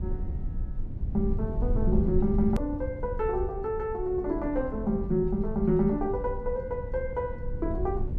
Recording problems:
low-frequency rumble; below 86 Hz, SNR 5 dB
click at an edit; at 2.5 s

